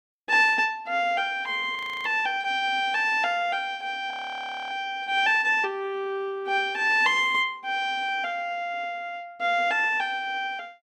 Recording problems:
frozen audio; at 2 s and at 4 s for 0.5 s

